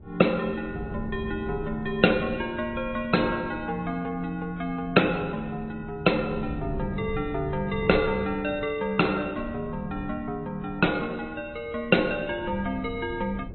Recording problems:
low-pass filter; nothing above 4.1 kHz
codec artefacts; AAC, log-spectral distance 2 dB
wind noise; below 190 Hz, SNR 14 dB

